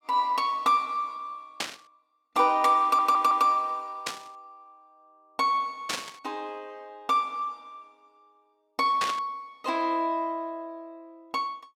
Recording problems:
static burst; 4 times, first at 1.5 s; peak +1 dB vs average level
stutter; at 3 s

